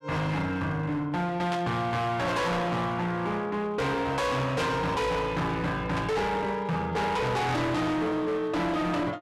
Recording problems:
distortion; hard clipping, signal-to-distortion ratio 6 dB
static burst; at 1.5 s, at 4.5 s and at 6 s; peak -3 dB vs average level

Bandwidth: 12.5 kHz